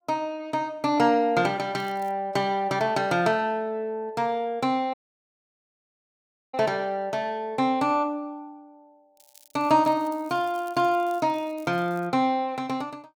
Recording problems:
crackle; at 2 s and from 9 to 12 s; loose cable, SNR 27 dB
audio cutting out; at 5 s for 1.5 s

